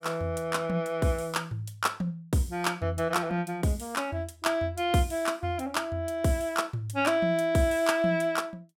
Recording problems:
none

